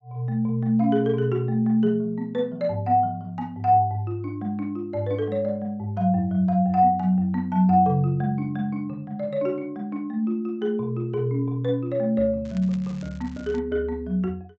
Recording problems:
treble cut off; nothing above 8 kHz
crackling; from 12 to 14 s; loose cable, SNR 27 dB

